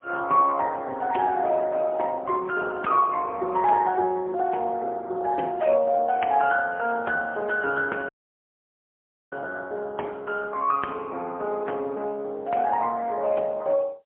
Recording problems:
phone line; 320 Hz to 2.8 kHz, AMR-NB, then MP3
dropout; at 8 s for 1 s

